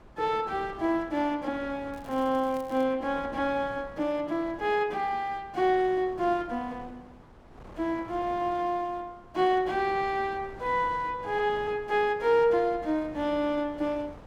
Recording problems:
wind on the microphone; below 780 Hz, SNR 21 dB
crackling; at 2 s; loose cable, SNR 27 dB

